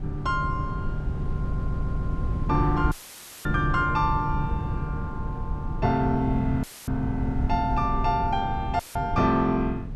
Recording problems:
wind on the microphone; below 140 Hz, SNR 5 dB
stutter; at 1.5 s
dropout; at 3 s for 0.5 s, at 6.5 s and at 9 s; filled with static

